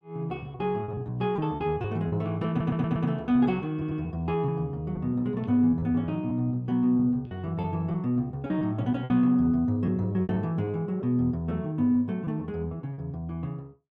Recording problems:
lost packets; 8% of the sound replaced, filled with repeated pitch periods
audio stuttering; at 2.5 s and at 3.5 s

